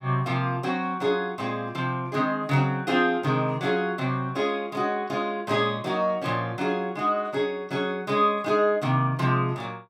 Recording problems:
none

